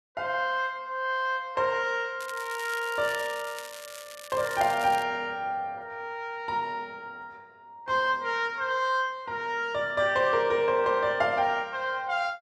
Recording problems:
crackle; from 2 to 5 s; loose cable, SNR 15 dB

